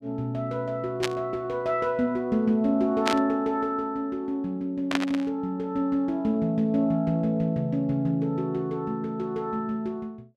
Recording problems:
burst of static; at 1 s, at 3 s and at 5 s; peak +4 dB vs average level

